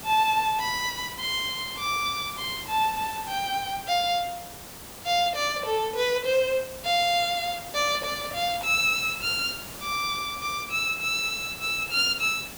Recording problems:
hiss; slope -3 dB per octave, SNR 13 dB

